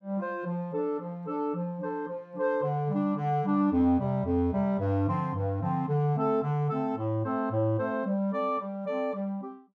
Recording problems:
none

